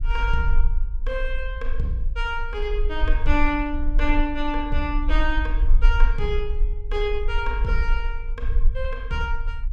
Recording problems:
rumble; below 42 Hz, strongest tone 20 Hz, SNR -1 dB

